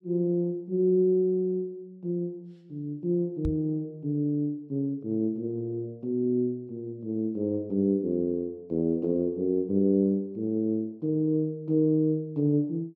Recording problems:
knock on the microphone; at 3.5 s; peak 0 dB vs average level

